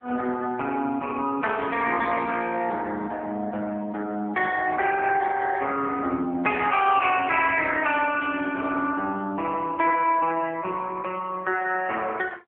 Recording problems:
telephone audio; 220 Hz to 3.3 kHz, AMR-NB

